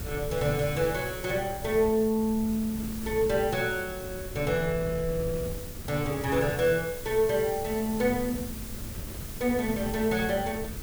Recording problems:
hiss; SNR 13 dB
wind on the microphone; below 190 Hz, SNR 12 dB

